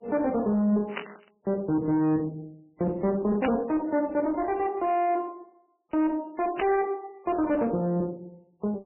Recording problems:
lossy compression; MP3, log-spectral distance 2 dB, nothing above 2.4 kHz
distortion; soft clipping, signal-to-distortion ratio 11 dB
static burst; at 1 s, at 3.5 s and at 6.5 s; peak -1 dB vs average level

